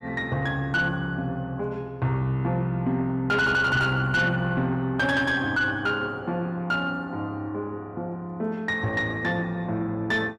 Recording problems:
distorted audio; soft clipping, signal-to-distortion ratio 11 dB

